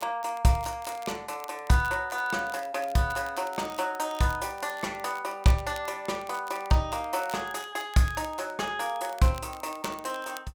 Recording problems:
crackle; vinyl, SNR 19 dB

